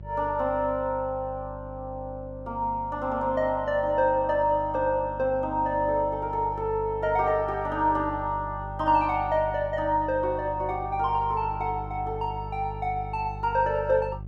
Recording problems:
hum; 50 Hz, harmonics up to 550 Hz, SNR 13 dB

